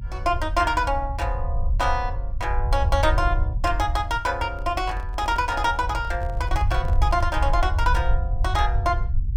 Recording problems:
rumble; below 74 Hz, SNR 2 dB
handling noise; from 4.5 to 7.5 s; peak -11 dB vs average level

